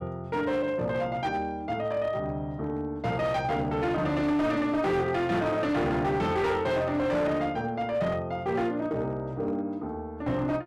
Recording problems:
distorted audio; hard clipping, signal-to-distortion ratio 11 dB

